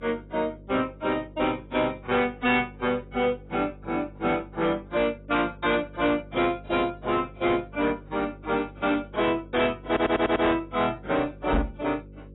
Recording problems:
lossy codec; AAC, log-spectral distance 3 dB, nothing above 3.8 kHz
distorted audio; soft clipping, signal-to-distortion ratio 11 dB
hum; 50 Hz, harmonics up to 550 Hz, SNR 20 dB
audio stuttering; at 10 s
microphone bump; at 12 s; peak +5 dB vs average level

